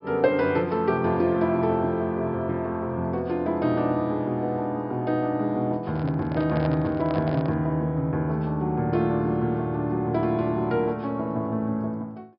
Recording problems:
treble missing; nothing above 5.5 kHz
microphone handling noise; from 6 to 7.5 s; peak -4 dB vs average level

